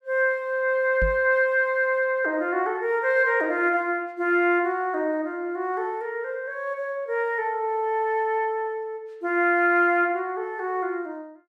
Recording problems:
microphone thump; at 1 s; peak 0 dB vs average level

